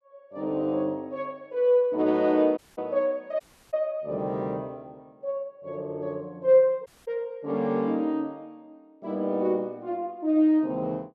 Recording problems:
audio cutting out; at 2.5 s, at 3.5 s and at 7 s

